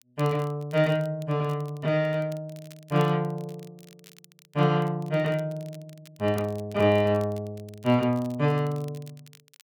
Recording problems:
crackle; vinyl, SNR 27 dB

